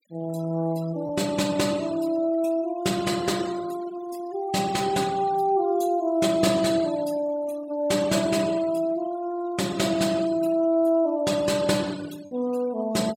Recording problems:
denoising artefacts; signal-to-artefact ratio 19 dB
packet loss; 0.5% of the sound replaced, filled with repeated pitch periods

